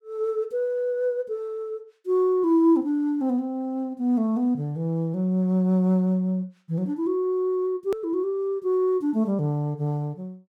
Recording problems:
edit click; at 8 s

